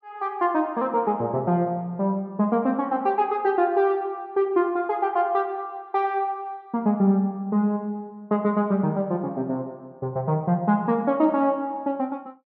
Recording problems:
none

